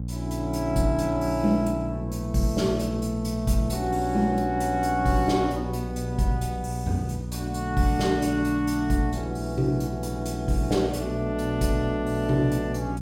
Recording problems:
electrical hum; 60 Hz, harmonics up to 480 Hz, SNR 7 dB

